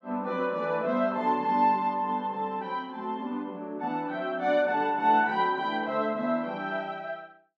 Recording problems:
none

